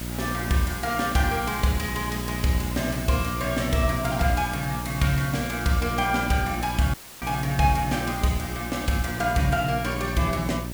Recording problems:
electrical hum; 60 Hz, harmonics up to 960 Hz, SNR 7 dB
background hiss; slope -1 dB per octave, SNR 12 dB
dropout; at 7 s; filled with static

